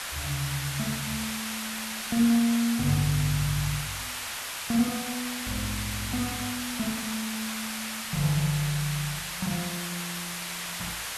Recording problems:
background hiss; SNR 3 dB

